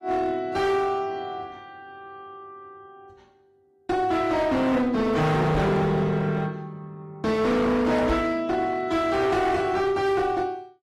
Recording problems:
lossy compression; AAC, log-spectral distance 2 dB, nothing above 13.7 kHz
distortion; hard clipping, signal-to-distortion ratio 8 dB
knock on the microphone; at 5.5 s and at 8 s; peak +2 dB vs average level

